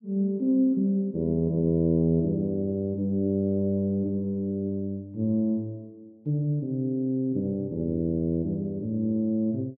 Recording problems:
none

